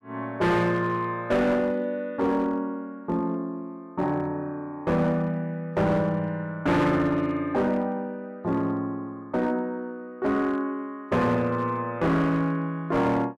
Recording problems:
distorted audio; hard clipping, uneven, signal-to-distortion ratio 10 dB

